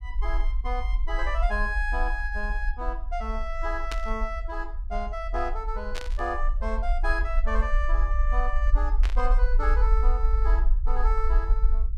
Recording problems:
rumble; below 46 Hz, SNR -4 dB
burst of static; at 4 s, at 6 s and at 9 s; peak +2 dB vs average level

